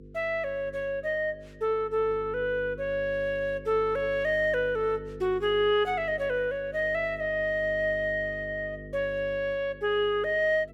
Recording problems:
hum; 50 Hz, harmonics up to 500 Hz, SNR 17 dB

